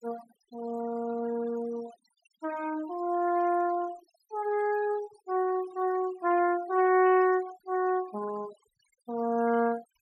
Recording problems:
denoising artefacts; signal-to-artefact ratio 20 dB

